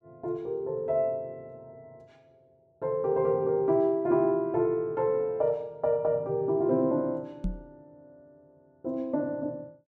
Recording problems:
knock on the microphone; at 7.5 s; peak 0 dB vs average level

